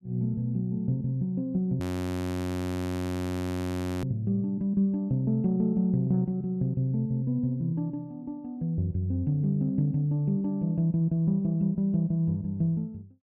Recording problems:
frozen audio; at 2 s for 2 s

